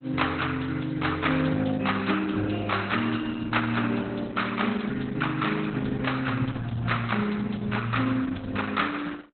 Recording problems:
codec artefacts; Opus, log-spectral distance 6 dB, nothing above 4 kHz

